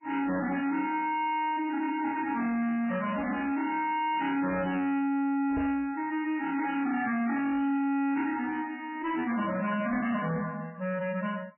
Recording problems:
lossy codec; MP3, log-spectral distance 3 dB, nothing above 2.5 kHz
distorted audio; soft clipping, signal-to-distortion ratio 7 dB
microphone bump; at 5.5 s; peak +1 dB vs average level

